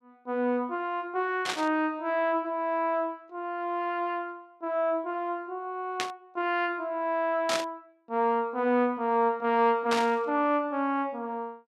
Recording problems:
static burst; 4 times, first at 1.5 s; peak +2 dB vs average level

